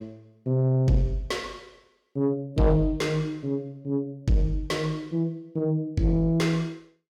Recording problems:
distortion; soft clipping, signal-to-distortion ratio 12 dB

